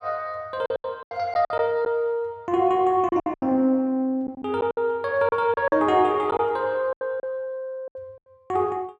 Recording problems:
lost packets; 10% of the sound replaced, filled with silence

